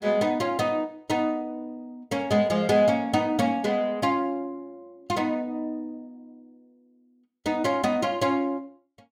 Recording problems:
none

